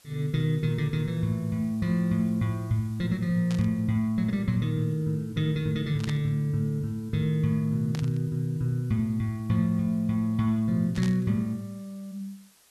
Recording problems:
hiss; slope 0 dB per octave, SNR 30 dB
burst of static; 4 times, first at 3.5 s; peak -7 dB vs average level

